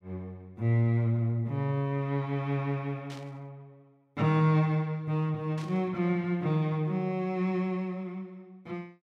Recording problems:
burst of static; at 3 s and at 5.5 s; peak -14 dB vs average level

